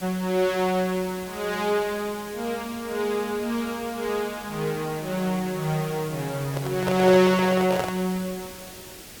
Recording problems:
hiss; SNR 15 dB
handling noise; from 6.5 to 8 s; peak +1 dB vs average level

